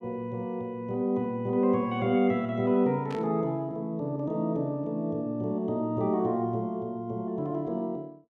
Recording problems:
burst of static; at 3 s; peak -10 dB vs average level

